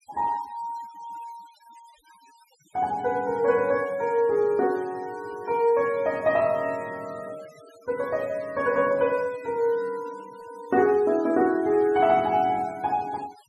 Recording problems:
denoising artefacts; signal-to-artefact ratio 25 dB

